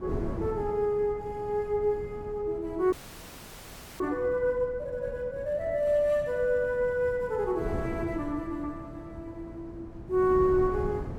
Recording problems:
wind on the microphone; below 280 Hz, SNR 12 dB
audio freezing; at 3 s for 1 s

